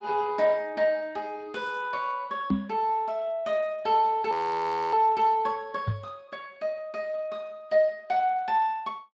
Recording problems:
lossy codec; Speex, log-spectral distance 2 dB
microphone bump; at 2.5 s and at 6 s; peak +5 dB vs average level
frozen audio; at 4.5 s for 0.5 s

